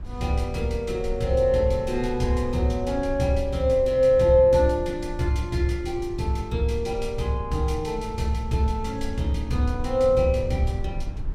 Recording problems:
rumble; below 86 Hz, SNR 12 dB

